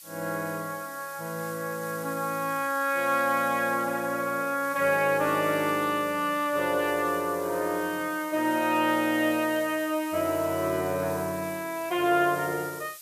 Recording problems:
hiss; slope +5 dB per octave, SNR 16 dB

